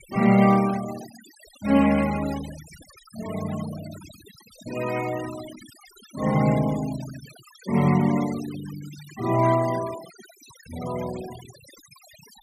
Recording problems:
noise reduction artefacts; signal-to-artefact ratio 17 dB

